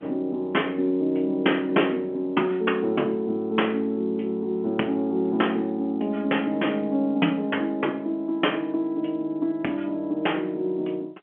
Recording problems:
phone line; 190 Hz to 3.3 kHz, G.711

